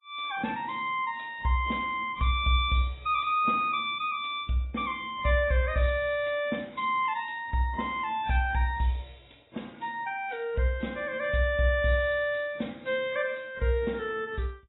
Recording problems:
codec artefacts; AAC, log-spectral distance 3 dB, nothing above 3.2 kHz

